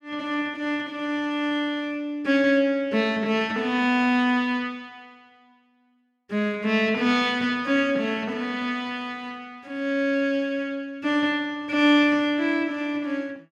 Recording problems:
none

